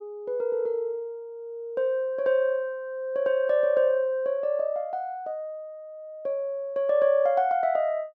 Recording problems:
none

